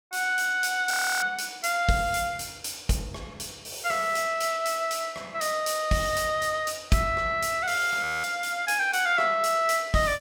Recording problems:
audio freezing; at 1 s and at 8 s

